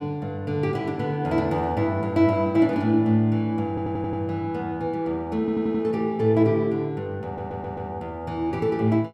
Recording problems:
stutter; at 3.5 s, at 5.5 s and at 7.5 s

